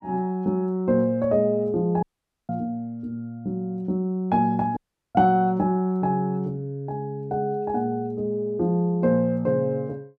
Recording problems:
audio cutting out; at 2 s and at 5 s

